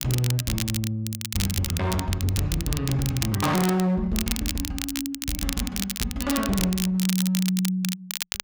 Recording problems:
distortion; hard clipping, signal-to-distortion ratio 6 dB
crackle; vinyl, SNR 5 dB

